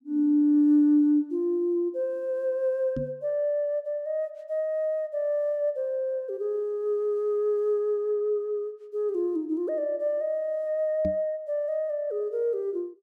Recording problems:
microphone thump; at 3 s and at 11 s; peak -2 dB vs average level

